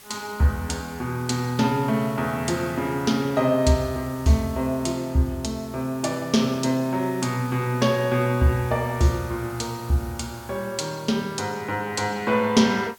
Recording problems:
hiss; slope 0 dB per octave, SNR 21 dB

